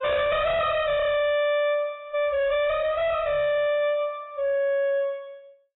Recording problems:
lossy codec; AAC, log-spectral distance 2 dB, nothing above 3.8 kHz
distorted audio; soft clipping, signal-to-distortion ratio 7 dB

